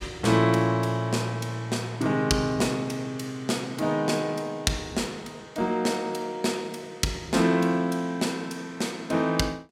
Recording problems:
none

